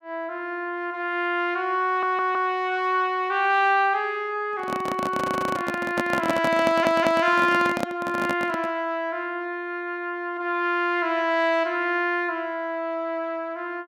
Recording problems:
stutter; at 2 s, at 5 s and at 6.5 s
handling noise; from 4.5 to 8.5 s; peak +2 dB vs average level

